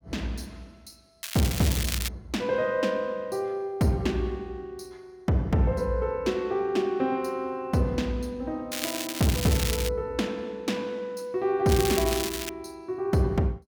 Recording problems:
crackle; at 1 s, from 8.5 to 10 s and at 12 s; loose cable, SNR 4 dB

